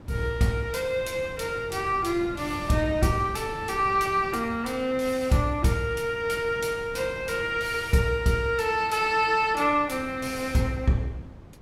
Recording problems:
wind noise; below 320 Hz, SNR 17 dB

